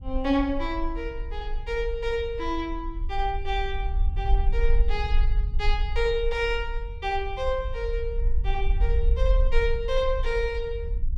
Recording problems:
rumble; below 48 Hz, strongest tone 22 Hz, SNR 1 dB

